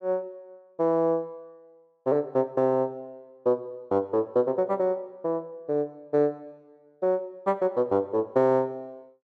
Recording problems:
none

